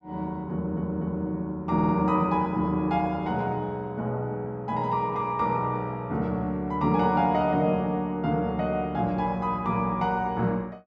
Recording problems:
stutter; at 0.5 s and at 1.5 s

